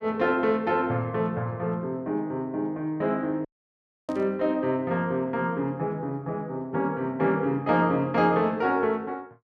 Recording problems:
dropout; at 3.5 s for 0.5 s
static burst; at 4 s; peak -20 dB vs average level

